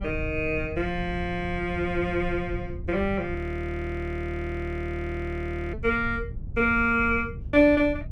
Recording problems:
wind noise; below 110 Hz, SNR 10 dB
audio freezing; at 3.5 s for 2.5 s

